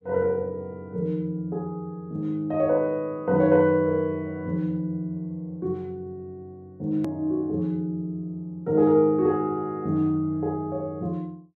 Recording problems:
hard cut with a click; at 7 s

